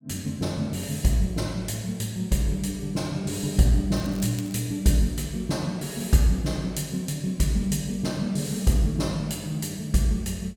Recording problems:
crackling; at 4 s; loose cable, SNR 19 dB

